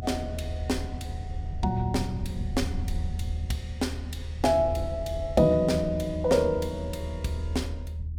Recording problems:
rumble; below 80 Hz, strongest tone 78 Hz, SNR 7 dB

